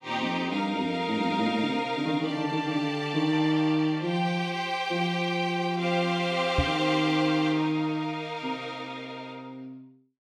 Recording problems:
knock on the microphone; at 6.5 s; peak +5 dB vs average level

